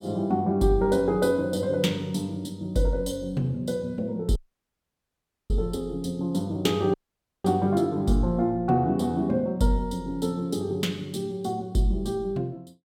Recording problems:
audio cutting out; at 4.5 s for 1 s and at 7 s for 0.5 s

